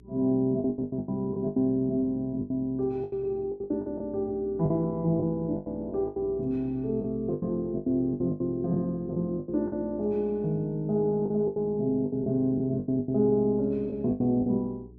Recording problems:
hum; 60 Hz, harmonics up to 420 Hz, SNR 23 dB
packet loss; 13% of the sound replaced, filled with the last packet

